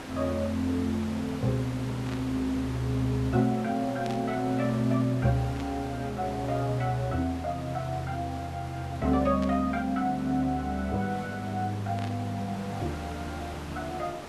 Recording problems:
hiss; slope -5 dB per octave, SNR 12 dB
burst of static; 5 times, first at 2 s; peak -8 dB vs average level

